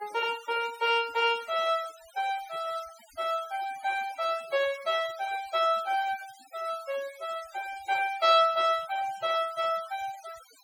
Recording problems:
denoising artefacts; signal-to-artefact ratio 19 dB

